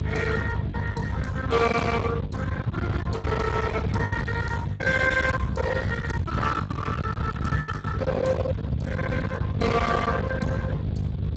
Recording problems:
lossy codec; Speex, log-spectral distance 3 dB, nothing above 7.6 kHz
distortion; hard clipping, uneven, signal-to-distortion ratio 6 dB
hum; 50 Hz, harmonics up to 700 Hz, SNR 6 dB
low-frequency rumble; below 460 Hz, SNR 5 dB
packet loss; 8% of the sound replaced, filled with the last packet

